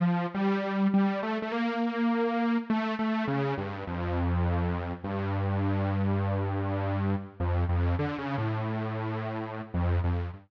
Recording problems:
none

